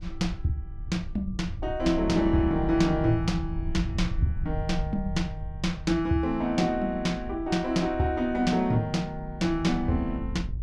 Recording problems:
wind on the microphone; below 82 Hz, SNR 10 dB

